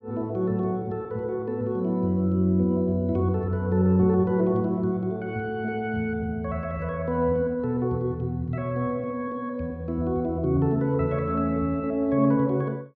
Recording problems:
none

